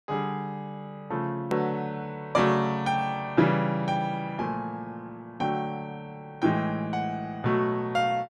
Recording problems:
edit click; at 1.5 s

